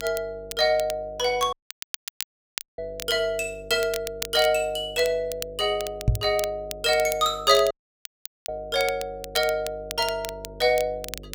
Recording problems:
hum; 50 Hz, harmonics up to 550 Hz, SNR 21 dB
crackling; vinyl, SNR 13 dB
audio cutting out; at 1.5 s for 1 s and at 7.5 s for 1 s
microphone bump; at 6 s; peak +7 dB vs average level

